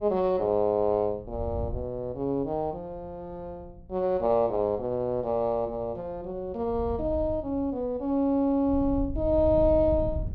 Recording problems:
wind noise; below 98 Hz, SNR 12 dB

